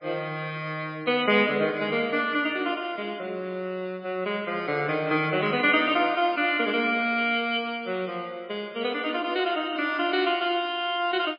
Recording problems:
lossy compression; MP3, log-spectral distance 2 dB, nothing above 4.1 kHz

